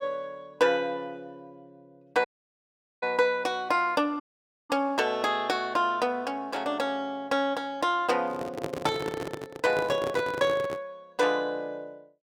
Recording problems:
dropout; at 2.5 s for 1 s and at 4 s
handling noise; from 8 to 11 s; peak -1 dB vs average level

